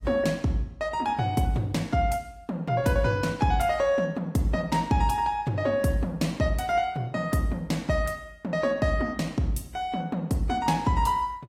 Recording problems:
lossy compression; AAC, log-spectral distance 2 dB, nothing above 14.7 kHz

